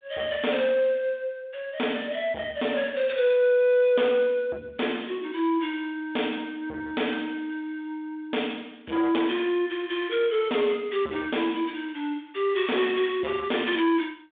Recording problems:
telephone audio; 280 Hz to 3.5 kHz, G.726
distorted audio; soft clipping, signal-to-distortion ratio 9 dB

